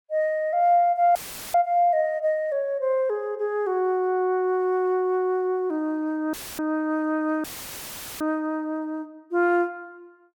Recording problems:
audio cutting out; at 1 s, at 6.5 s and at 7.5 s for 1 s; filled with static

